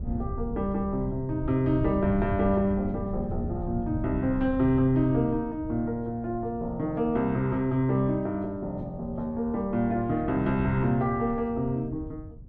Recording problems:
wind on the microphone; below 140 Hz, SNR 11 dB

